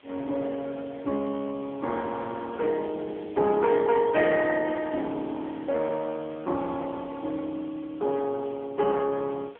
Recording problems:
phone line; 240 Hz to 3.3 kHz, AMR-NB
background hiss; SNR 27 dB

